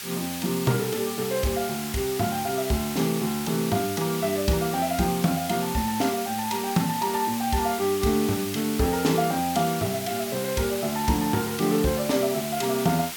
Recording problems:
background hiss; slope +2 dB per octave, SNR 7 dB

